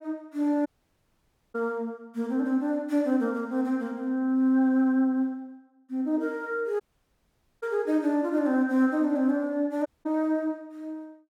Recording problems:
audio cutting out; at 0.5 s for 1 s, at 7 s for 1 s and at 10 s

